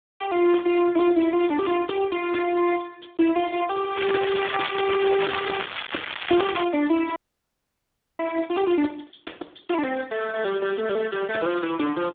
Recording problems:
telephone audio; 260 Hz to 2.3 kHz, Speex
crackle; from 4 to 6.5 s; loose cable, SNR 6 dB
audio freezing; at 7 s for 1 s

